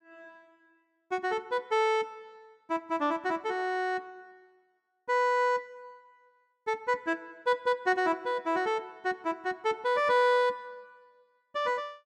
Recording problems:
none

